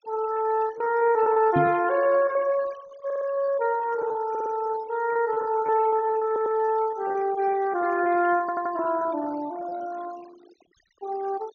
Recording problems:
low-pass filter; nothing above 6.6 kHz
noise reduction artefacts; signal-to-artefact ratio 21 dB
lost packets; 12% of the sound replaced, filled with repeated pitch periods
microphone bump; at 1.5 s; peak +2 dB vs average level
stutter; 4 times, first at 3 s

